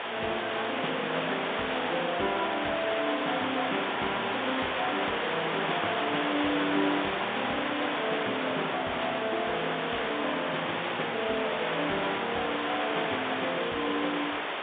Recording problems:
phone line; 260 Hz to 3.6 kHz, G.711
background hiss; SNR -1 dB

